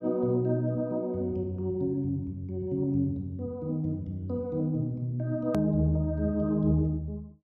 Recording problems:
edit click; at 5.5 s

